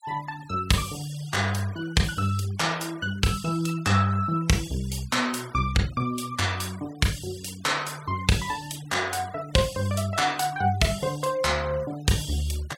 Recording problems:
denoising artefacts; signal-to-artefact ratio 20 dB

